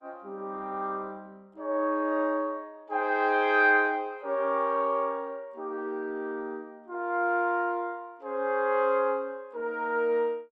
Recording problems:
lossy compression; Opus, log-spectral distance 2 dB

